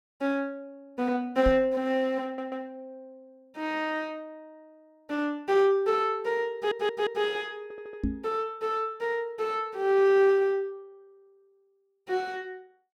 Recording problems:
microphone thump; at 1.5 s and at 8 s; peak +2 dB vs average level
audio stuttering; at 2.5 s, at 6.5 s and at 7.5 s

